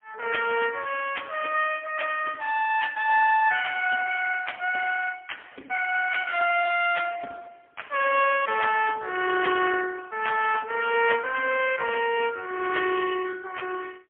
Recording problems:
telephone audio; 280 Hz to 2.9 kHz, AMR-NB, then MP3

